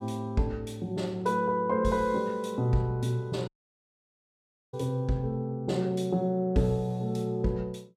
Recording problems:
audio cutting out; at 3.5 s for 1.5 s

